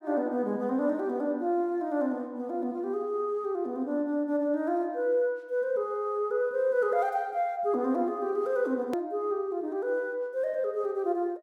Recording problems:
hard cut with a click; at 9 s

